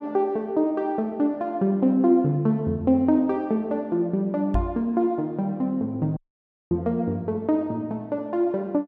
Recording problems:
microphone bump; at 4.5 s; peak +2 dB vs average level
audio cutting out; at 6 s for 0.5 s

